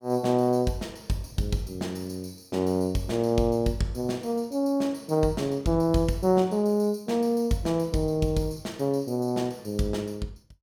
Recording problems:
none

